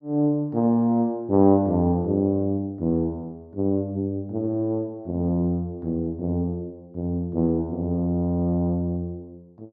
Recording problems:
none

